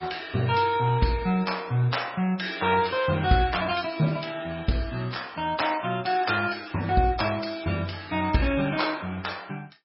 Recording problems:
codec artefacts; MP3, log-spectral distance 5 dB, nothing above 5.3 kHz

